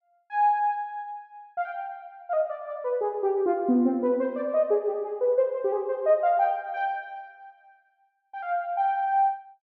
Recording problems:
none

